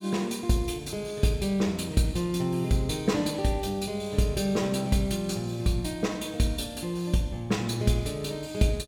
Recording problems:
none

